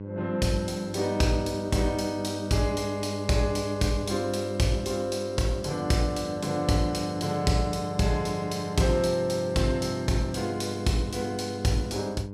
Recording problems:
mains hum; 50 Hz, harmonics up to 1 kHz, SNR 10 dB

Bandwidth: 14.5 kHz